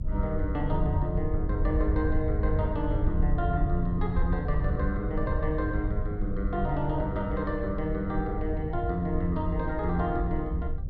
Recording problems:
hum; 50 Hz, harmonics up to 600 Hz, SNR 21 dB
wind on the microphone; below 80 Hz, SNR 1 dB

